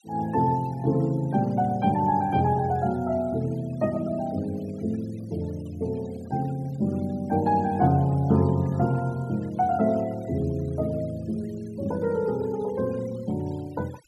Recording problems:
denoising artefacts; signal-to-artefact ratio 25 dB

